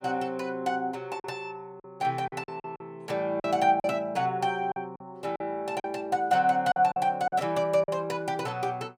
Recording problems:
packet loss; 7% of the sound replaced, filled with silence

